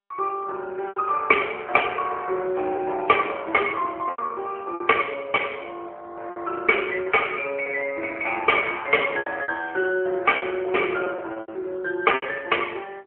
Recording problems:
telephone audio; 300 Hz to 3.1 kHz, AMR-NB
packet loss; 6% of the sound replaced, filled with repeated pitch periods

